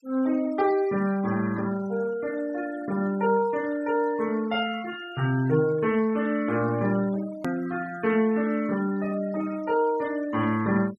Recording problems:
noise reduction artefacts; signal-to-artefact ratio 19 dB
hard cut with a click; at 7.5 s

